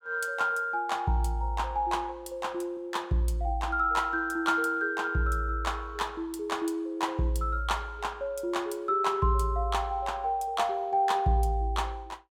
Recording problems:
none

